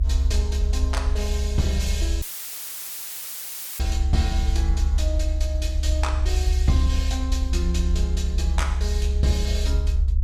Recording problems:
rumble; below 70 Hz, strongest tone 68 Hz, SNR -6 dB
dropout; at 2 s for 1.5 s; filled with static

